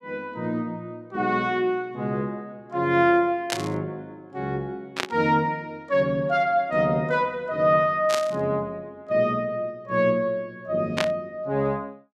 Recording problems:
burst of static; 4 times, first at 3.5 s; peak +3 dB vs average level

